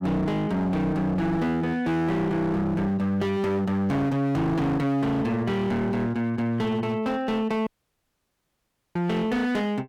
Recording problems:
distortion; hard clipping, signal-to-distortion ratio 8 dB
audio cutting out; at 7.5 s for 1.5 s

